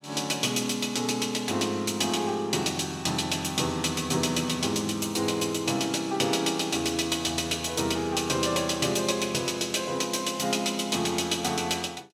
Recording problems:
none

